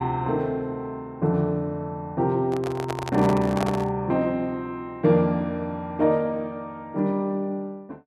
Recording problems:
microphone handling noise; from 2.5 to 4 s; peak 0 dB vs average level

